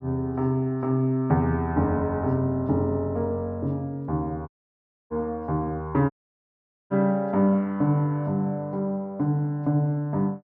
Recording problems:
audio cutting out; at 4.5 s for 0.5 s and at 6 s for 1 s

